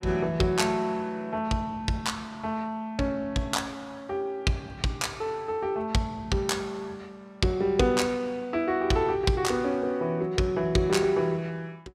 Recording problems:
none

